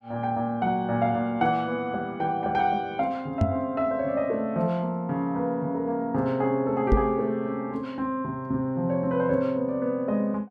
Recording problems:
knock on the microphone; at 3.5 s and at 7 s; peak +7 dB vs average level

